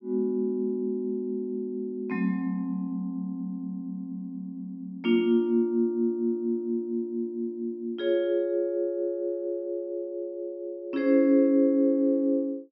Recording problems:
treble cut off; nothing above 5.7 kHz

